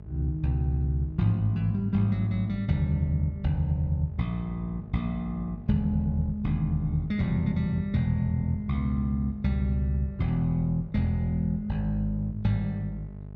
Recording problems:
hum; 50 Hz, harmonics up to 650 Hz, SNR 16 dB

